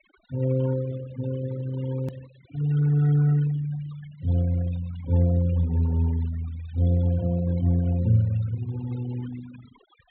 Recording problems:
treble missing; nothing above 4 kHz
noise reduction artefacts; signal-to-artefact ratio 19 dB
hard cut with a click; at 2 s

